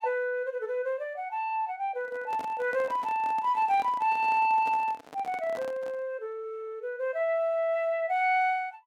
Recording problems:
microphone handling noise; from 2 to 6 s; peak -9 dB vs average level

